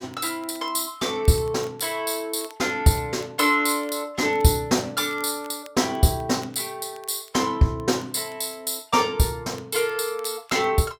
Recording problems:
crackling; vinyl, SNR 28 dB

